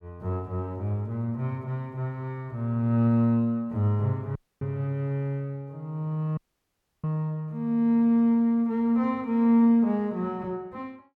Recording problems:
audio cutting out; at 4.5 s and at 6.5 s for 0.5 s

